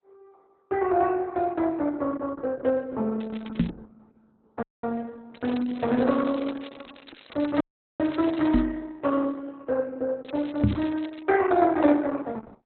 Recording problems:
lossy codec; Opus, log-spectral distance 5 dB, nothing above 3.9 kHz
crackling; at 3 s, from 5.5 to 8.5 s and at 10 s; loose cable, SNR 22 dB
microphone thump; at 3.5 s, at 8.5 s and at 11 s; peak +7 dB vs average level
audio cutting out; at 4.5 s and at 7.5 s

